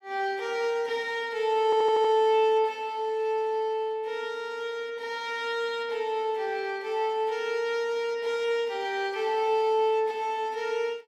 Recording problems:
audio stuttering; at 1.5 s

